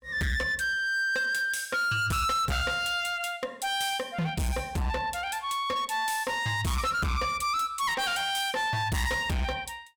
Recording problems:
distorted audio; hard clipping, signal-to-distortion ratio 6 dB

